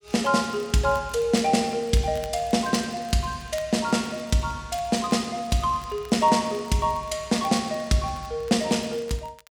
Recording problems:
crackling; vinyl, SNR 25 dB

